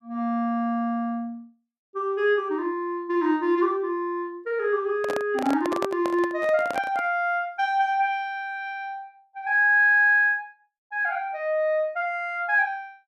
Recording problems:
microphone handling noise; from 5 to 7 s; peak -2 dB vs average level

